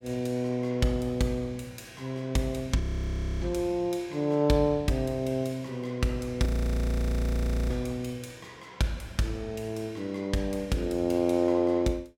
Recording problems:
frozen audio; at 3 s for 0.5 s and at 6.5 s for 1.5 s

